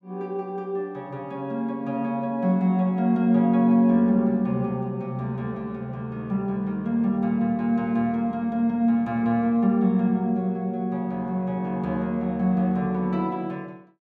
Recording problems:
none

